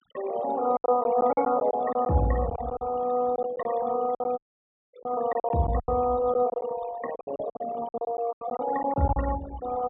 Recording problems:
treble missing; nothing above 4 kHz
noise reduction artefacts; signal-to-artefact ratio 14 dB
packet loss; 13% of the sound replaced, filled with silence
dropout; at 4.5 s for 0.5 s

